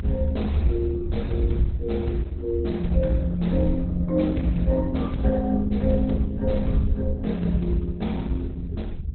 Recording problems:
lossy compression; Opus, log-spectral distance 2 dB, nothing above 4.1 kHz
electrical hum; 50 Hz, harmonics up to 450 Hz, SNR 26 dB
low-frequency rumble; below 80 Hz, strongest tone 74 Hz, SNR 4 dB

